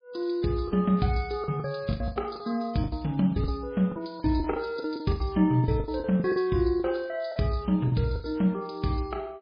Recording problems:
lossy compression; MP3, log-spectral distance 4 dB, nothing above 5 kHz
packet loss; 13% of the sound replaced, filled with the last packet

